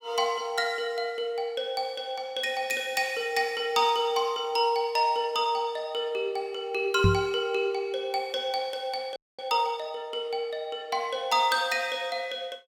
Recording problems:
knock on the microphone; at 7 s; peak +8 dB vs average level
frozen audio; at 9 s

